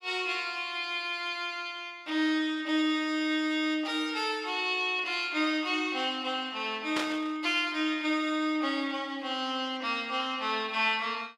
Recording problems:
burst of static; at 7 s; peak +1 dB vs average level

